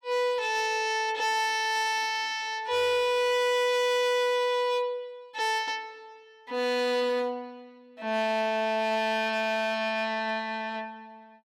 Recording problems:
distortion; hard clipping, signal-to-distortion ratio 11 dB

